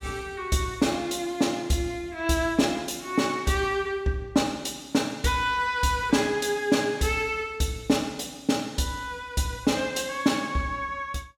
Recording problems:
none

